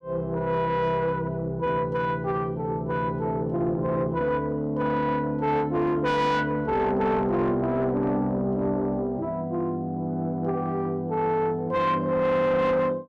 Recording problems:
distortion; soft clipping, signal-to-distortion ratio 11 dB

